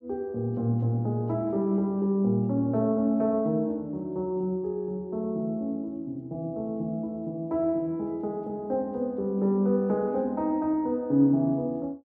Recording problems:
none

